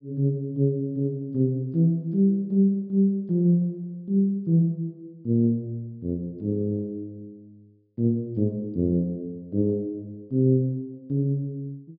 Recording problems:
treble cut off; nothing above 5.5 kHz

